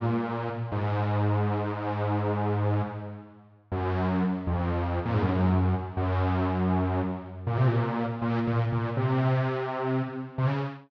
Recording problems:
none

